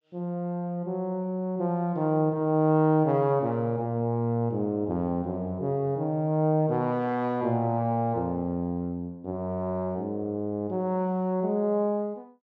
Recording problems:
none

